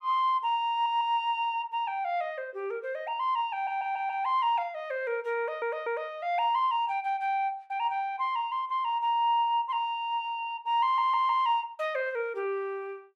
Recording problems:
stutter; 4 times, first at 0.5 s

